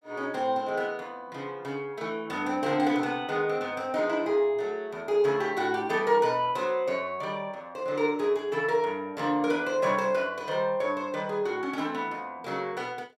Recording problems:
none

